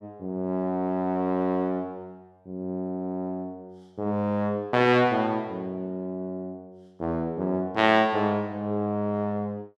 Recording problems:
none

